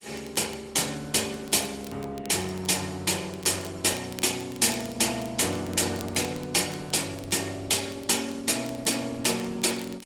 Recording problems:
codec artefacts; Opus, log-spectral distance 6 dB, nothing above 18.9 kHz
crackling; vinyl, SNR 21 dB

